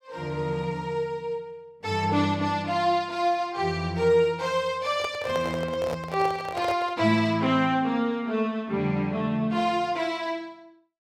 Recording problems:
microphone handling noise; from 5 to 7 s; peak -3 dB vs average level

